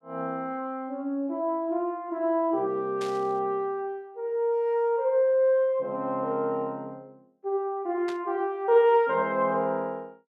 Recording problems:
static burst; at 3 s and at 8 s; peak -10 dB vs average level

